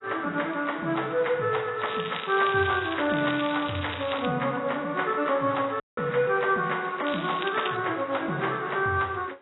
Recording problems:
lossy compression; AAC, log-spectral distance 9 dB, nothing above 3.9 kHz
crackling; from 2 to 4.5 s and at 7 s; loose cable, SNR 11 dB
audio cutting out; at 6 s

